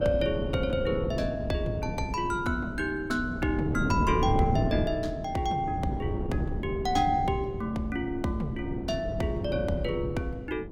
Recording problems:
wind noise; below 260 Hz, SNR 4 dB

